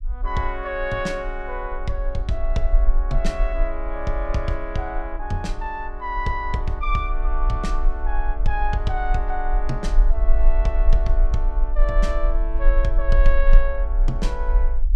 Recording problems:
rumble; below 38 Hz, strongest tone 24 Hz, SNR -3 dB

